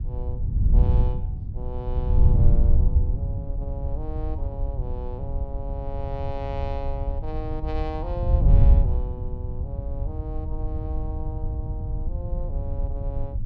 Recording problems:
wind on the microphone; below 80 Hz, SNR -11 dB

